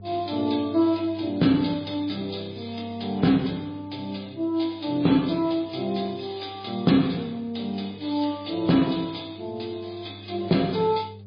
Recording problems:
lossy codec; MP3, log-spectral distance 7 dB, nothing above 4.1 kHz
hum; 50 Hz, harmonics up to 600 Hz, SNR 20 dB

